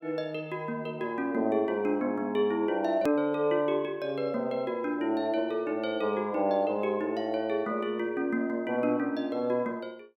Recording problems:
click at an edit; at 3 s

